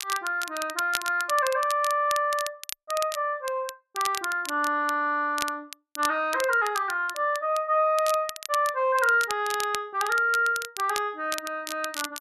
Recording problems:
crackling; vinyl, SNR 11 dB

